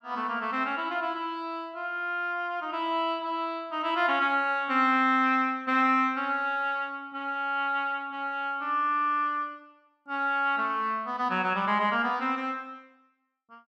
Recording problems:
none

